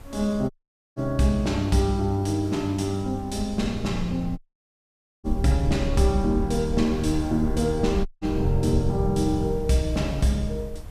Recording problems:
hiss; slope -5 dB per octave, SNR 27 dB
low-frequency rumble; below 68 Hz, SNR 10 dB
audio cutting out; at 0.5 s, at 4.5 s for 1 s and at 8 s

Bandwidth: 14.5 kHz